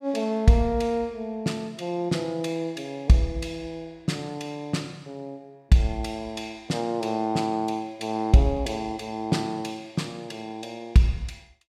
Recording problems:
none

